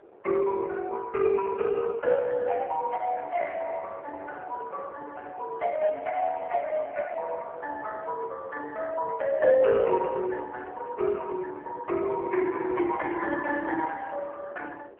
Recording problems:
phone line; 320 Hz to 3.4 kHz, AMR-NB
wind on the microphone; below 730 Hz, SNR 21 dB

